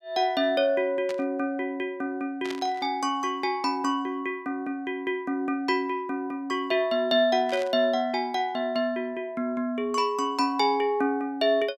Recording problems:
static burst; at 1 s, at 2.5 s and at 7.5 s; peak -6 dB vs average level

